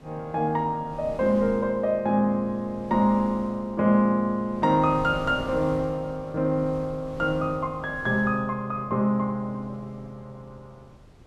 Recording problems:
wind noise; below 360 Hz, SNR 19 dB

